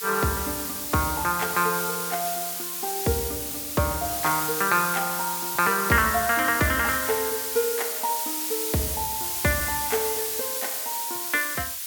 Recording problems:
background hiss; SNR 1 dB

